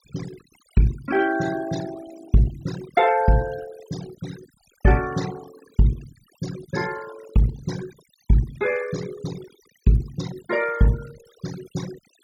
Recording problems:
denoising artefacts; signal-to-artefact ratio 16 dB

